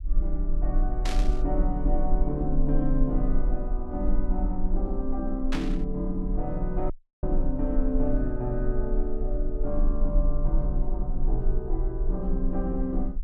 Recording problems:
low-frequency rumble; below 38 Hz, strongest tone 22 Hz, SNR -1 dB
burst of static; at 1 s and at 5.5 s; peak +1 dB vs average level
audio cutting out; at 7 s

